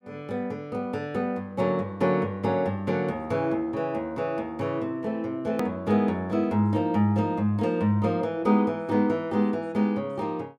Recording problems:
click at an edit; at 5.5 s

